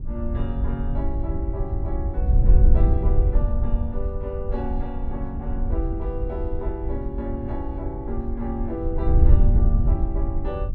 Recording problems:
wind noise; below 68 Hz, SNR -7 dB

